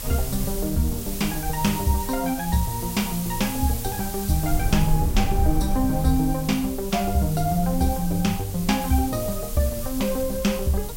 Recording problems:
background hiss; SNR 9 dB
low-frequency rumble; below 72 Hz, strongest tone 26 Hz, SNR 8 dB

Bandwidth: 16 kHz